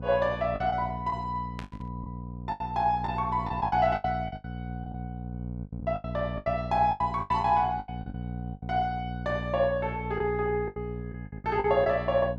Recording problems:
hum; 60 Hz, harmonics up to 720 Hz, SNR 9 dB
lost packets; 13% of the sound replaced, filled with the last packet
burst of static; at 1.5 s; peak -9 dB vs average level

